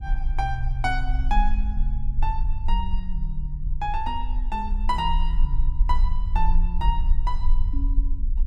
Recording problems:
low-frequency rumble; below 42 Hz, strongest tone 20 Hz, SNR -3 dB

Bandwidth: 14 kHz